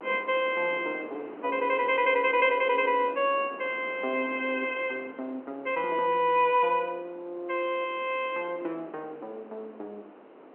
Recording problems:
telephone audio; 240 Hz to 3.3 kHz, G.711
wind noise; below 870 Hz, SNR 18 dB
crackle; at 6 s; loose cable, SNR 29 dB

